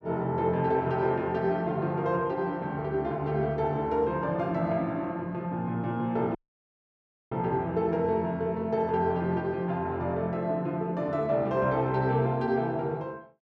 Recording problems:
audio cutting out; at 6.5 s for 1 s

